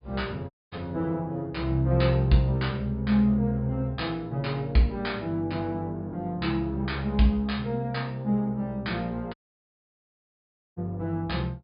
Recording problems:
treble missing; nothing above 5 kHz
audio cutting out; at 0.5 s and at 9.5 s for 1.5 s

